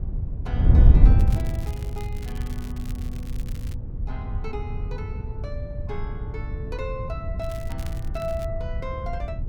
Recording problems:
wind on the microphone; below 92 Hz, SNR -11 dB
crackle; from 1 to 4 s and from 7.5 to 8.5 s; loose cable, SNR 11 dB

